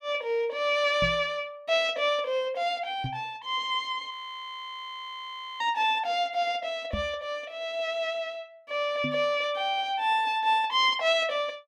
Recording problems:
microphone thump; 4 times, first at 1 s; peak -2 dB vs average level
audio freezing; at 4 s for 1.5 s

